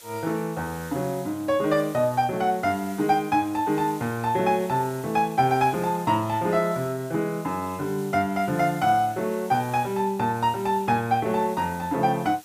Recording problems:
background hiss; slope +1 dB per octave, SNR 21 dB

